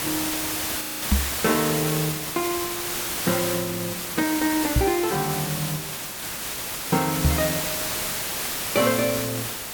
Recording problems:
hiss; slope -1 dB per octave, SNR 0 dB
frozen audio; at 1 s
knock on the microphone; at 1 s, at 5 s and at 7.5 s; peak +8 dB vs average level

